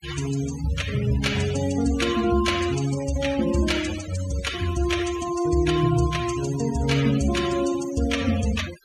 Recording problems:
denoising artefacts; signal-to-artefact ratio 11 dB

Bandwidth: 15.5 kHz